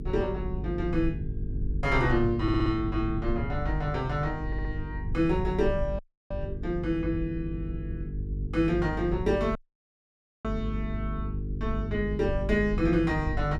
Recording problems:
mains hum; 50 Hz, harmonics up to 450 Hz, SNR 6 dB
rumble; below 84 Hz, SNR 9 dB
audio stuttering; at 2.5 s and at 4.5 s
audio cutting out; at 6 s and at 9.5 s for 1 s

